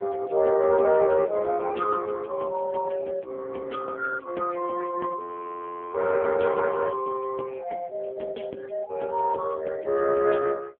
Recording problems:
telephone audio; 280 Hz to 3 kHz, AMR-NB
audio freezing; at 5 s for 0.5 s

